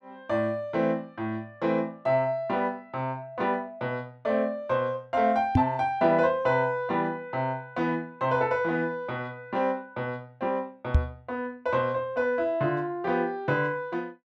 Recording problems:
knock on the microphone; at 5.5 s and at 11 s; peak +10 dB vs average level

